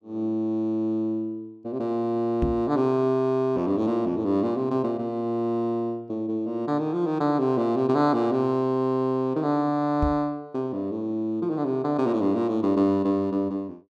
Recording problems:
microphone thump; at 2.5 s and at 10 s; peak +2 dB vs average level

